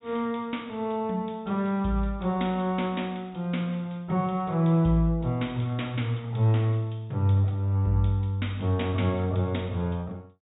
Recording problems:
treble missing; nothing above 4 kHz

